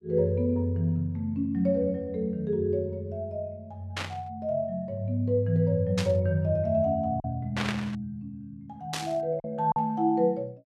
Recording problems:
lost packets; 1.1% of the sound replaced, filled with silence
burst of static; 4 times, first at 4 s; peak +1 dB vs average level

